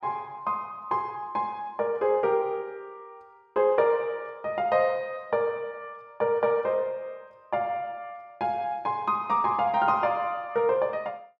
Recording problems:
none

